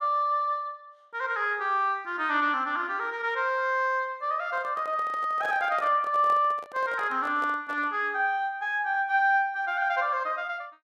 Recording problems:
handling noise; from 4.5 to 8 s; peak -10 dB vs average level

